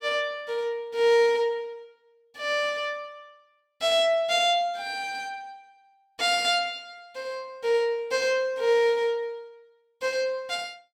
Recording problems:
none

